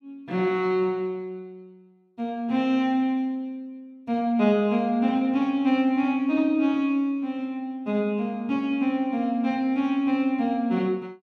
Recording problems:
none

